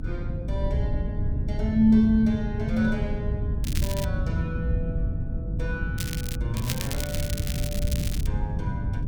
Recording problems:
electrical hum; 50 Hz, harmonics up to 300 Hz, SNR 12 dB
wind on the microphone; below 130 Hz, SNR 2 dB
crackling; at 3.5 s, at 6 s and from 6.5 to 8.5 s; loose cable, SNR 8 dB

